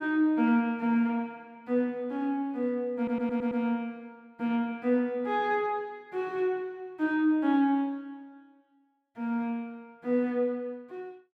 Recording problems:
audio stuttering; at 3 s

